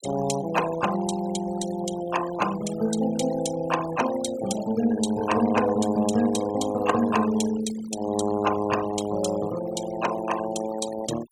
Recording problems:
noise reduction artefacts; signal-to-artefact ratio 12 dB

